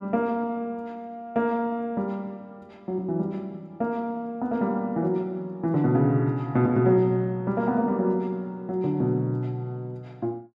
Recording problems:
none

